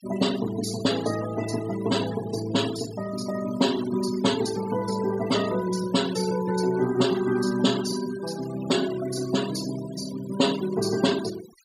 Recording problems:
denoising artefacts; signal-to-artefact ratio 13 dB

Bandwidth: 15.5 kHz